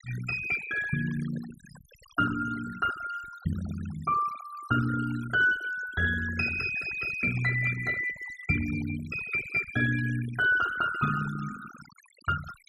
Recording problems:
noise reduction artefacts; signal-to-artefact ratio 15 dB

